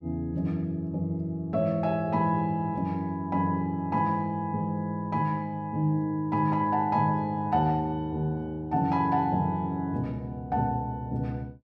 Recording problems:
none

